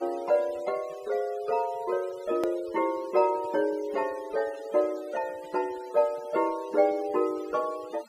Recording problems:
noise reduction artefacts; signal-to-artefact ratio 21 dB
click at an edit; at 2.5 s

